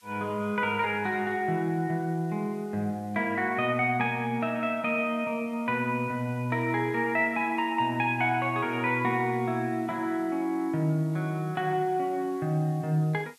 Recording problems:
hiss; slope +4 dB per octave, SNR 30 dB

